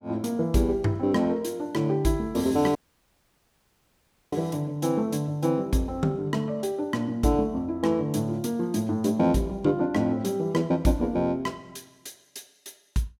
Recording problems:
audio cutting out; at 3 s for 1.5 s

